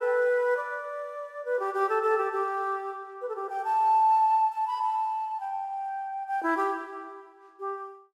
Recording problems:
none

